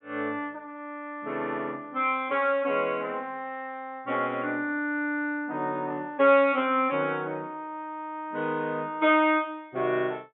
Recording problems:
low-pass filter; nothing above 3.7 kHz

